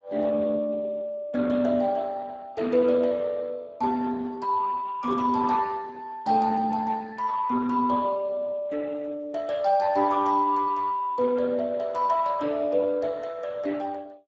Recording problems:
lossy codec; Speex, log-spectral distance 3 dB

